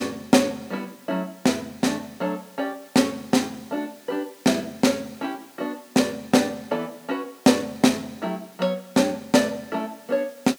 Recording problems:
hiss; slope +2 dB per octave, SNR 26 dB

